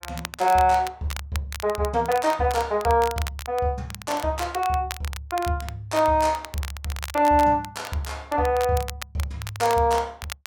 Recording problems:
crackling; vinyl, SNR 14 dB

